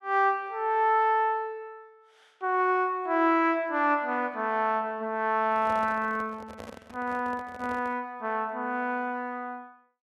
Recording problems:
handling noise; from 5.5 to 8 s; peak -10 dB vs average level

